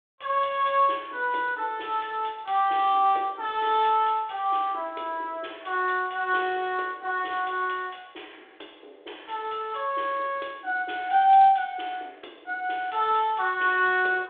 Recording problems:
telephone audio; 280 Hz to 3.6 kHz, G.726

